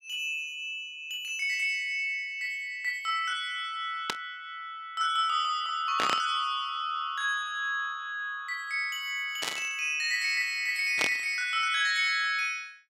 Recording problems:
static burst; 4 times, first at 4 s; peak +4 dB vs average level

